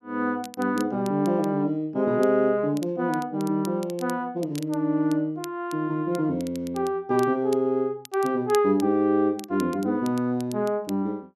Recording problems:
crackle; vinyl, SNR 21 dB

